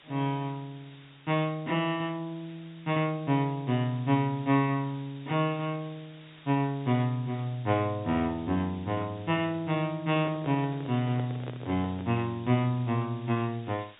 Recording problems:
treble cut off; nothing above 4 kHz
hiss; SNR 24 dB
handling noise; from 10 to 12 s; peak -7 dB vs average level

